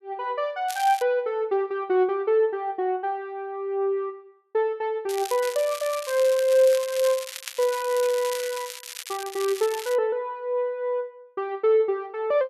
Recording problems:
crackle; at 0.5 s and from 5 to 10 s; loose cable, SNR 11 dB

